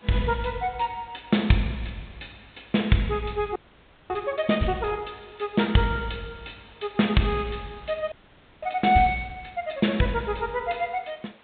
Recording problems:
treble missing; nothing above 4 kHz
hiss; SNR 27 dB
frozen audio; at 3.5 s for 0.5 s and at 8 s for 0.5 s

